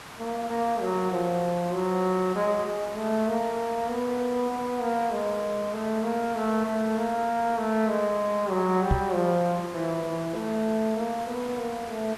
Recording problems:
hiss; SNR 14 dB
microphone thump; at 9 s; peak +6 dB vs average level

